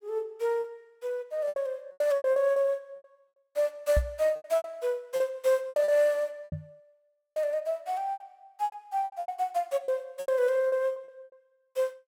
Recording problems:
packet loss; 15% of the sound replaced, filled with repeated pitch periods
knock on the microphone; at 4 s and at 6.5 s; peak +5 dB vs average level

